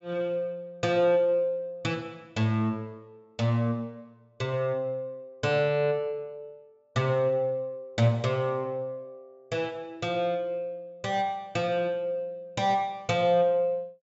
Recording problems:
treble cut off; nothing above 8 kHz

